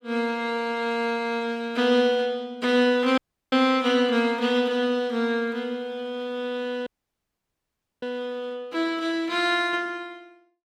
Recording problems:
dropout; at 3 s and at 7 s for 1 s

